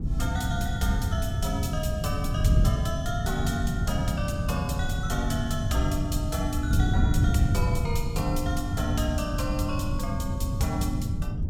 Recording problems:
wind on the microphone; below 130 Hz, SNR -2 dB

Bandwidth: 17 kHz